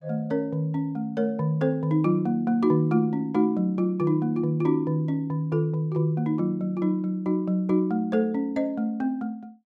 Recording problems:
none

